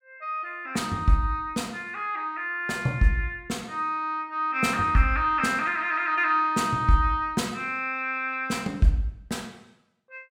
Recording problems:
none

